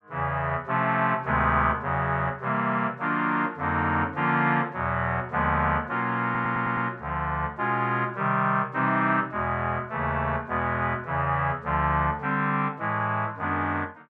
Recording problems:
audio stuttering; at 6 s

